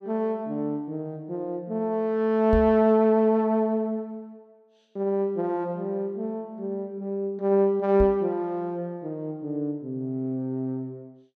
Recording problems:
microphone thump; at 2.5 s and at 8 s; peak +2 dB vs average level

